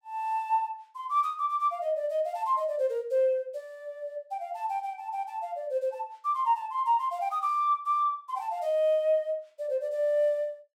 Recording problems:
none

